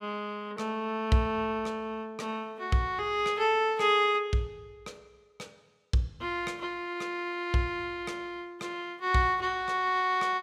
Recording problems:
none

